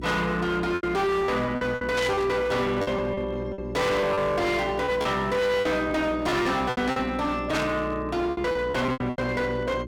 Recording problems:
distortion; hard clipping, uneven, signal-to-distortion ratio 7 dB
hum; 60 Hz, harmonics up to 360 Hz, SNR 13 dB
packet loss; 11% of the sound replaced, filled with repeated pitch periods
static burst; at 2 s and at 7.5 s; peak -2 dB vs average level

